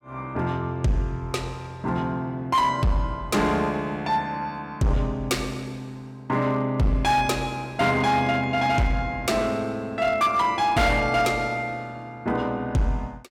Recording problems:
distortion; hard clipping, uneven, signal-to-distortion ratio 12 dB

